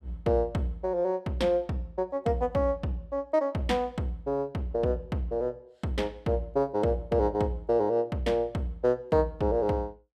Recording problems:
none

